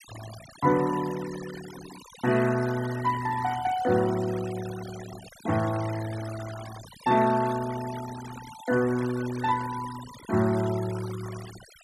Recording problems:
denoising artefacts; signal-to-artefact ratio 15 dB

